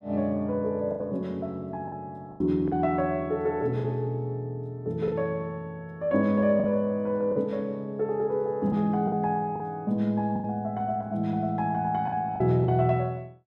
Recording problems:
packet loss; 5% of the sound replaced, filled with the last packet

